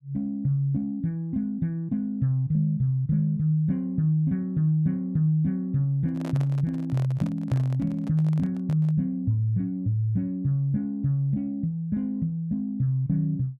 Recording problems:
microphone handling noise; from 6 to 9 s; peak -9 dB vs average level

